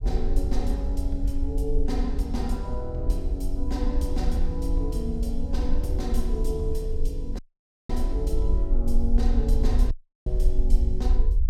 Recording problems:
low-frequency rumble; below 48 Hz, strongest tone 20 Hz, SNR -4 dB
audio cutting out; at 7.5 s for 0.5 s and at 10 s

